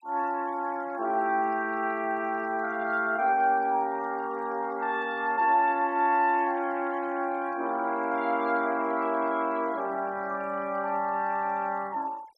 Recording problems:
denoising artefacts; signal-to-artefact ratio 25 dB

